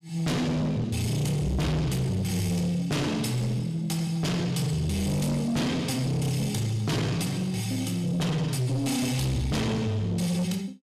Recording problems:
distortion; soft clipping, signal-to-distortion ratio 7 dB

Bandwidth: 14.5 kHz